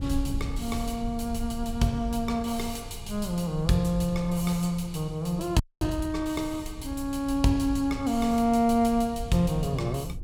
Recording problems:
rumble; below 94 Hz, SNR 13 dB
audio freezing; at 5.5 s

